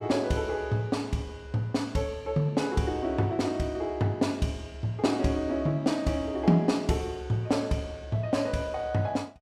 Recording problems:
none

